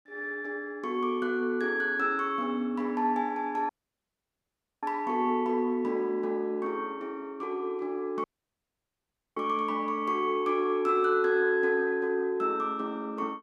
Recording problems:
dropout; at 3.5 s for 1 s and at 8 s for 1 s

